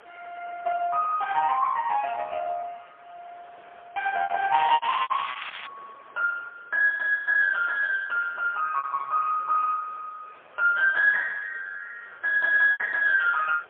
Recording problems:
telephone audio; 430 Hz to 2.3 kHz, AMR-NB, then MP3
hiss; SNR 28 dB
lost packets; 3% of the sound replaced, filled with repeated pitch periods
crackle; from 4.5 to 5.5 s; loose cable, SNR 11 dB

